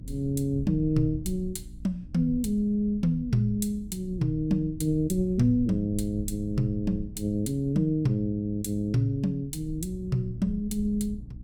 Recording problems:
hum; 60 Hz, harmonics up to 300 Hz, SNR 20 dB
rumble; below 90 Hz, SNR 15 dB

